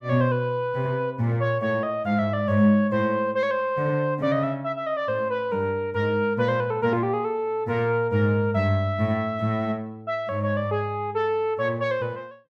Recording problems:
none

